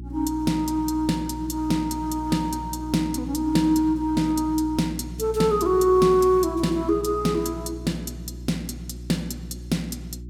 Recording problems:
electrical hum; 60 Hz, harmonics up to 360 Hz, SNR 13 dB

